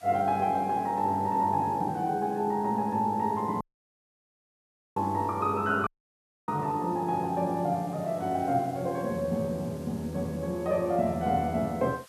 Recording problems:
hiss; SNR 25 dB
audio cutting out; at 3.5 s for 1.5 s and at 6 s for 0.5 s

